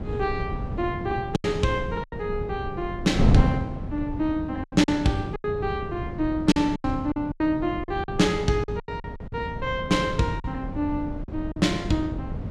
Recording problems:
wind noise; below 210 Hz, SNR 5 dB
lost packets; 8% of the sound replaced, filled with silence

